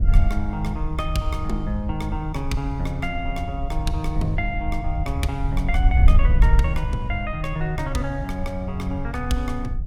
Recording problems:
wind noise; below 70 Hz, SNR -2 dB

